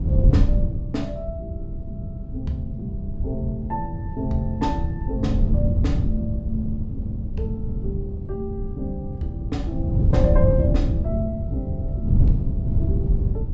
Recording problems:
treble cut off; nothing above 8 kHz
wind on the microphone; below 120 Hz, SNR -5 dB

